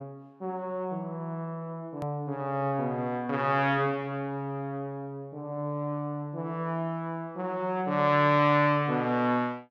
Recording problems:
edit click; at 2 s

